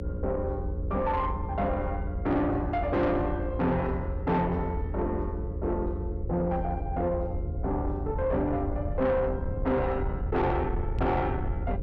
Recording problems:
distortion; soft clipping, signal-to-distortion ratio 10 dB
hum; 60 Hz, harmonics up to 540 Hz, SNR 13 dB
rumble; below 82 Hz, SNR 5 dB
knock on the microphone; at 11 s; peak +1 dB vs average level

